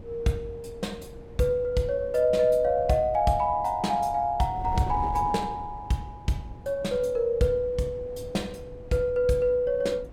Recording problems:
wind on the microphone; below 260 Hz, SNR 16 dB

